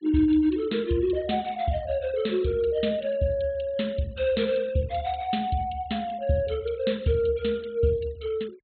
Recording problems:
low-pass filter; nothing above 4.3 kHz
denoising artefacts; signal-to-artefact ratio 25 dB

